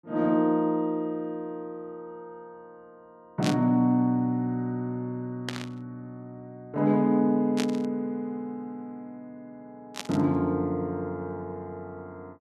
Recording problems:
burst of static; 4 times, first at 3.5 s; peak 0 dB vs average level

